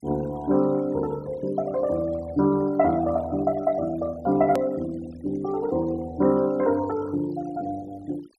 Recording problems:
noise reduction artefacts; signal-to-artefact ratio 21 dB
edit click; at 4.5 s

